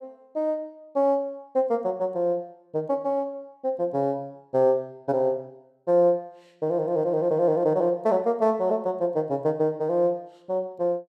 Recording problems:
none

